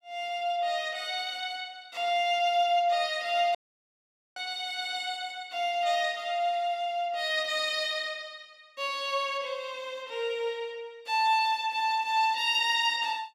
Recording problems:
audio cutting out; at 3.5 s for 1 s

